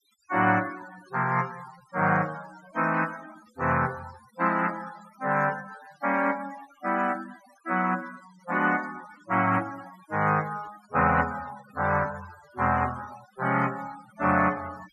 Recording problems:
denoising artefacts; signal-to-artefact ratio 18 dB

